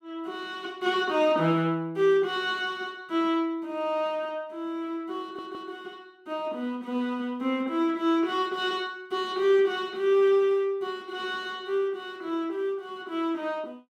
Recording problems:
audio stuttering; at 5 s

